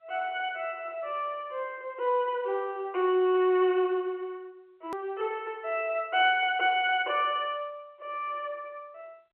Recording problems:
phone line; 320 Hz to 3.1 kHz, G.711
edit click; at 5 s

